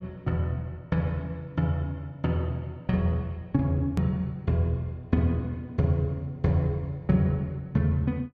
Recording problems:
click at an edit; at 4 s

